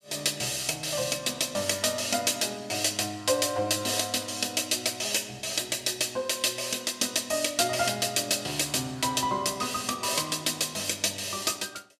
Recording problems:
none

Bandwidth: 14.5 kHz